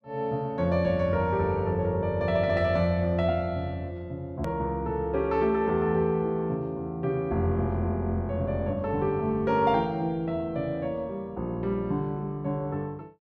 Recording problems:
click at an edit; at 4.5 s

